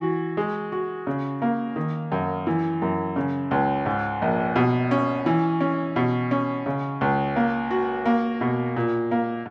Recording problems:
none

